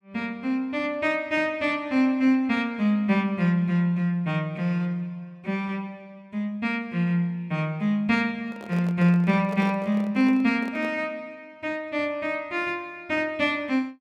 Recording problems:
microphone handling noise; from 8.5 to 11 s; peak -10 dB vs average level

